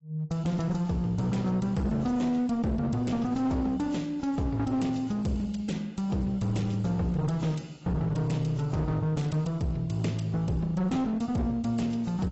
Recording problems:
codec artefacts; AAC, log-spectral distance 2 dB, nothing above 8 kHz
distorted audio; hard clipping, uneven, signal-to-distortion ratio 9 dB

